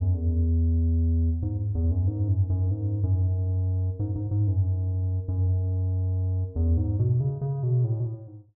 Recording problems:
none

